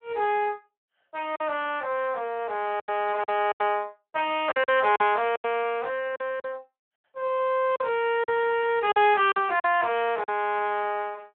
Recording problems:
telephone audio; 340 Hz to 3.3 kHz, Speex
lost packets; 8% of the sound replaced, filled with silence

